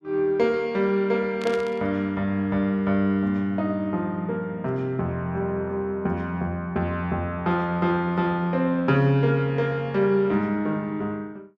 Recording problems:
static burst; at 1.5 s; peak -7 dB vs average level

